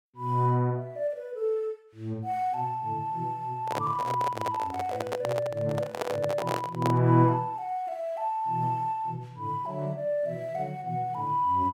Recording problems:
microphone handling noise; from 3.5 to 7 s; peak +3 dB vs average level

